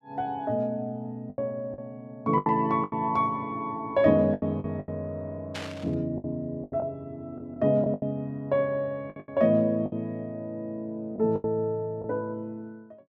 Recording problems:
lost packets; 9% of the sound replaced, filled with the last packet
burst of static; at 5.5 s; peak -4 dB vs average level

